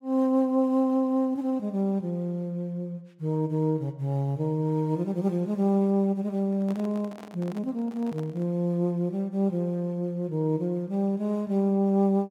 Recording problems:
handling noise; from 6.5 to 8.5 s; peak -12 dB vs average level

